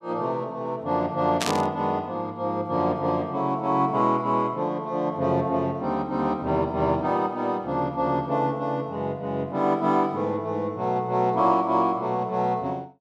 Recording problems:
static burst; at 1.5 s; peak +2 dB vs average level

